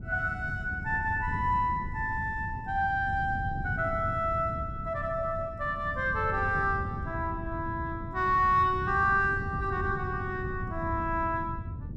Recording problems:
wind noise; below 160 Hz, SNR 8 dB

